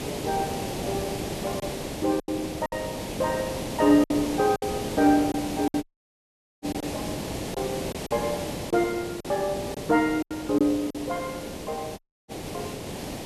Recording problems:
hiss; SNR 6 dB
lost packets; 6% of the sound replaced, filled with silence
dropout; at 6 s for 1 s and at 12 s

